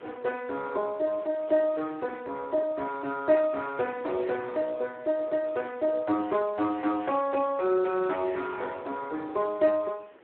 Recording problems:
phone line; 280 Hz to 2.5 kHz, Speex
wind on the microphone; below 1.6 kHz, SNR 23 dB

